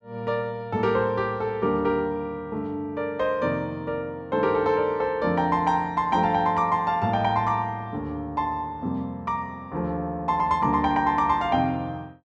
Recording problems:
none

